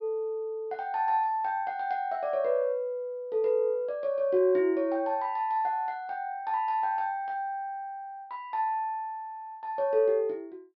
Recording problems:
low-pass filter; nothing above 5.5 kHz

